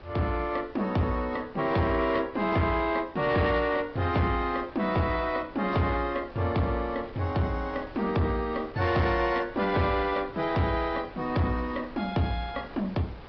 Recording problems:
low-pass filter; nothing above 5.2 kHz
codec artefacts; AAC, log-spectral distance 3 dB
distortion; soft clipping, signal-to-distortion ratio 12 dB
wind noise; below 1.2 kHz, SNR 20 dB

